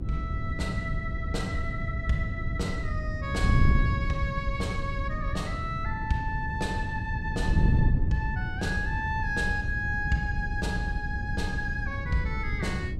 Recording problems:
hum; 60 Hz, harmonics up to 600 Hz, SNR 16 dB
wind on the microphone; below 130 Hz, SNR -1 dB

